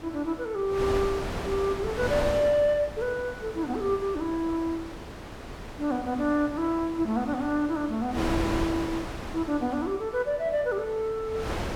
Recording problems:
hiss; slope -6 dB per octave, SNR 26 dB
wind noise; below 1.1 kHz, SNR 8 dB

